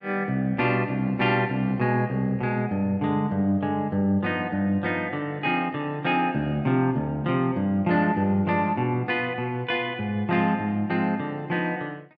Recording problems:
none

